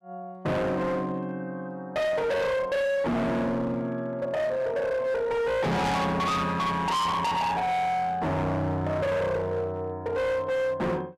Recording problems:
distorted audio; hard clipping, signal-to-distortion ratio 6 dB

